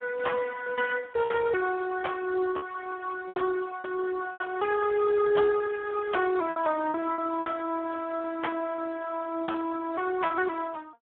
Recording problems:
phone line; 220 Hz to 2.1 kHz, Speex
packet loss; 7% of the sound replaced, filled with repeated pitch periods

